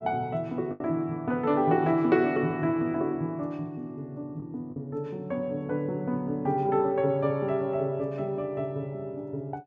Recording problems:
packet loss; 1.5% of the sound replaced, filled with the last packet

